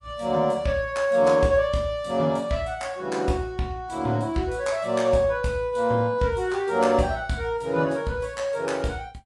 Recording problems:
lossy codec; MP3, log-spectral distance 2 dB, nothing above 11 kHz

